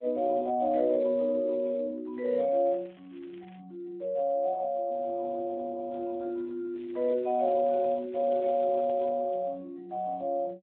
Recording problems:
telephone audio; 280 Hz to 2.2 kHz, Speex
crackling; from 2 to 3.5 s and from 7 to 9 s; loose cable, SNR 30 dB

